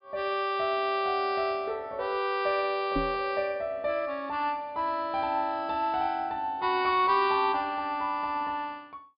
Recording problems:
low-pass filter; nothing above 5.1 kHz
microphone thump; at 3 s; peak +1 dB vs average level

